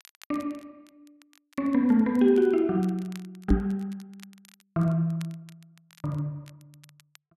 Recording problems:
crackling; vinyl, SNR 29 dB
microphone bump; at 3.5 s; peak +7 dB vs average level

